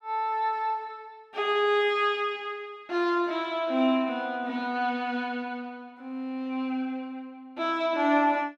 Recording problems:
none

